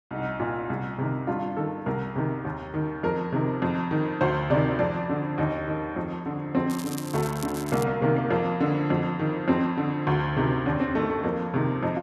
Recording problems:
crackling; from 6.5 to 8 s; loose cable, SNR 14 dB

